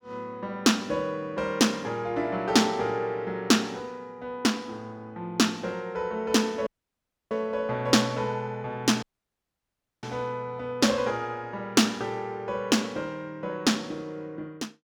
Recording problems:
dropout; at 6.5 s for 0.5 s and at 9 s for 1 s

